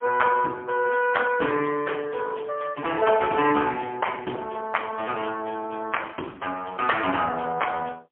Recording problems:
phone line; 190 Hz to 2.8 kHz, AMR-NB, then MP3

